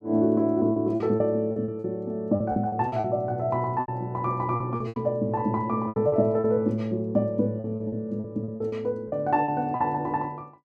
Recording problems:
lost packets; 12% of the sound replaced, filled with repeated pitch periods

